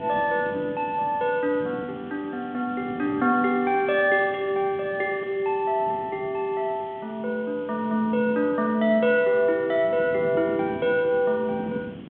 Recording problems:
phone line; 150 Hz to 3.5 kHz, G.726
hiss; SNR 29 dB
wind noise; below 350 Hz, SNR 17 dB

